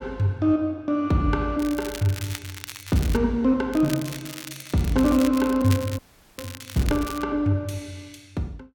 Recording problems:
crackling; from 1.5 to 3 s, from 3.5 to 5.5 s and from 5.5 to 7 s; loose cable, SNR 14 dB
frozen audio; at 6 s

